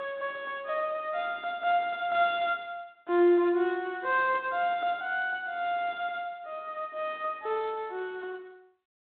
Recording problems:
phone line; 260 Hz to 3.6 kHz, G.726

